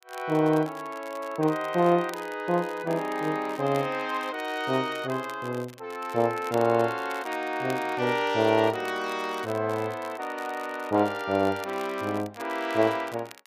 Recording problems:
crackle; vinyl, SNR 21 dB

